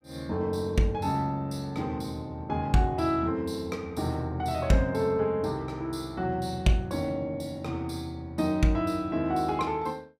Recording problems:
none

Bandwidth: 15.5 kHz